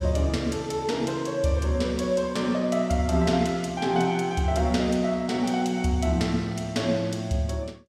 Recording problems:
none

